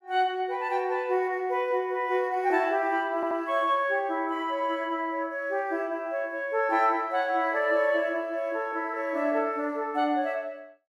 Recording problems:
stutter; at 3 s

